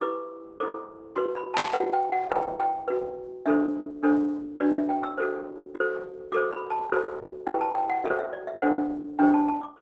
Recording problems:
lossy codec; Opus, log-spectral distance 3 dB, nothing above 7.8 kHz
lost packets; 10% of the sound replaced, filled with the last packet
burst of static; at 1.5 s; peak +4 dB vs average level

